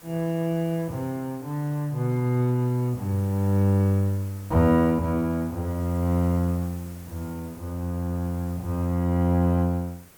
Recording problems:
background hiss; slope -3 dB per octave, SNR 23 dB

